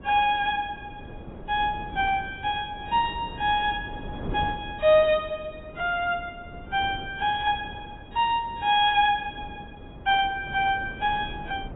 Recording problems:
lossy compression; AAC, log-spectral distance 3 dB, nothing above 3.4 kHz
wind noise; below 390 Hz, SNR 16 dB

